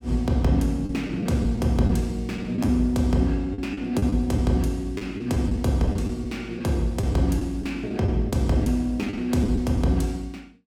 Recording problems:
packet loss; 7% of the sound replaced, filled with the last packet

